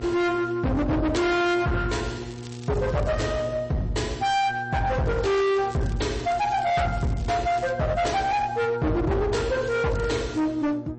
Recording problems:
lossy codec; MP3, log-spectral distance 3 dB, nothing above 8.2 kHz
distortion; hard clipping, uneven, signal-to-distortion ratio 5 dB
hum; 60 Hz, harmonics up to 1.2 kHz, SNR 15 dB
crackling; from 2 to 3 s, from 5 to 7.5 s and at 9.5 s; loose cable, SNR 23 dB

